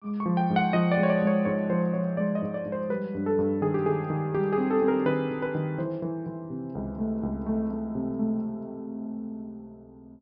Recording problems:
treble missing; nothing above 5.4 kHz

